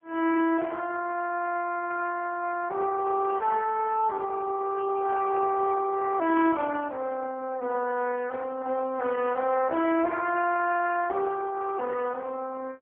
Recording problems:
phone line; 280 Hz to 2.7 kHz, AMR-NB

